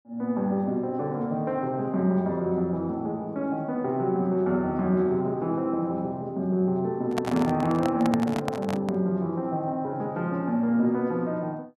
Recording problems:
microphone handling noise; from 7 to 9 s; peak +1 dB vs average level

